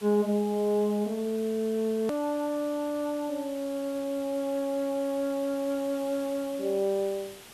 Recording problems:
hiss; slope -2 dB per octave, SNR 18 dB
click at an edit; at 2 s

